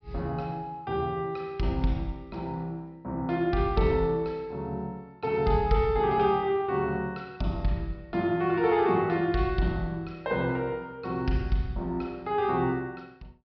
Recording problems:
treble cut off; nothing above 5.5 kHz

